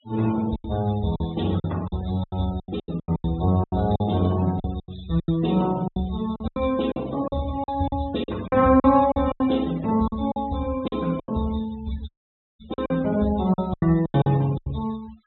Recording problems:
treble missing; nothing above 3.9 kHz
noise reduction artefacts; signal-to-artefact ratio 20 dB
packet loss; 15% of the sound replaced, filled with silence
dropout; at 12 s for 0.5 s

